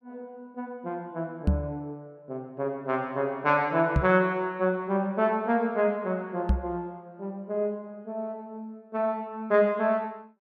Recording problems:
knock on the microphone; at 1.5 s, at 4 s and at 6.5 s; peak +8 dB vs average level

